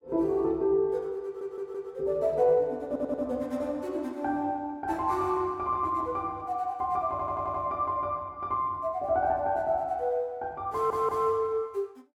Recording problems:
stutter; 4 times, first at 1.5 s

